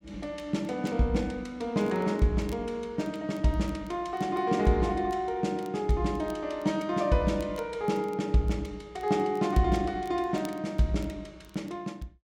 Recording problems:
crackle; vinyl, SNR 29 dB

